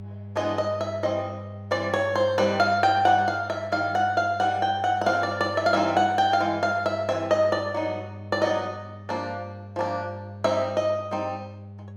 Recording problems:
mains hum; 50 Hz, harmonics up to 600 Hz, SNR 16 dB

